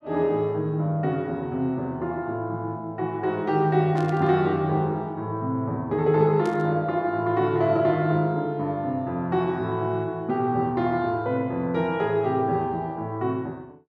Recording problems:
burst of static; at 4 s and at 6.5 s; peak -13 dB vs average level

